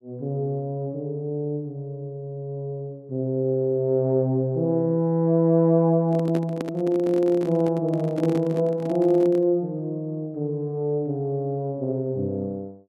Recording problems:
microphone handling noise; from 6 to 9.5 s; peak -2 dB vs average level

